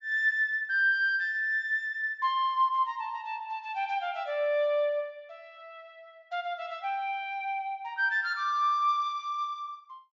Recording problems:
treble missing; nothing above 7.3 kHz

